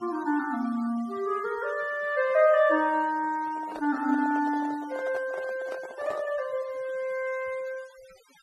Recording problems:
denoising artefacts; signal-to-artefact ratio 22 dB
handling noise; from 3.5 to 6.5 s; peak -7 dB vs average level

